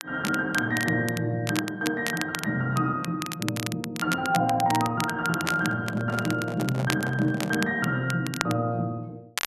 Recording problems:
crackle; vinyl, SNR 9 dB
handling noise; from 5.5 to 7.5 s; peak -4 dB vs average level

